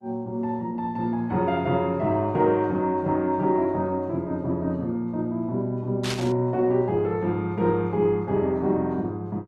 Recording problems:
codec artefacts; Opus, log-spectral distance 2 dB
burst of static; at 6 s; peak -3 dB vs average level

